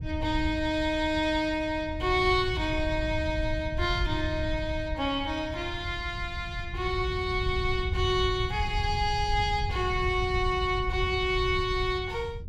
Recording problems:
wind on the microphone; below 100 Hz, SNR 6 dB

